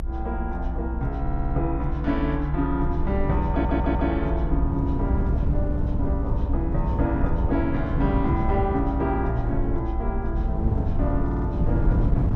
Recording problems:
rumble; below 62 Hz, strongest tone 60 Hz, SNR 3 dB
wind on the microphone; below 140 Hz, SNR 1 dB
audio stuttering; at 1 s, at 3.5 s and at 11 s

